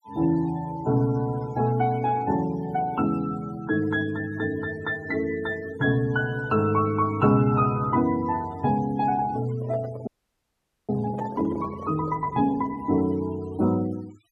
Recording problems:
noise reduction artefacts; signal-to-artefact ratio 21 dB
handling noise; from 9.5 to 12 s; peak -7 dB vs average level
frozen audio; at 10 s for 1 s

